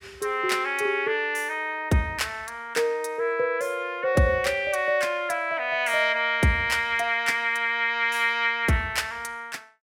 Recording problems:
none

